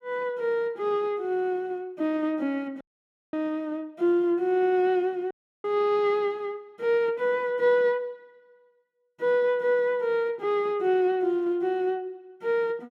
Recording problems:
audio cutting out; at 3 s for 0.5 s and at 5.5 s

